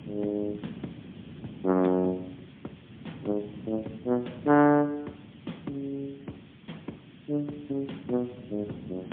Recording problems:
phone line; 150 Hz to 3.3 kHz, AMR-NB, then MP3
background hiss; SNR 27 dB
wind noise; below 290 Hz, SNR 17 dB

